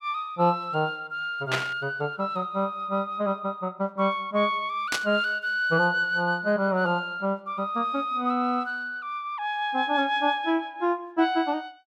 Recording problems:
burst of static; at 1.5 s and at 5 s; peak +3 dB vs average level

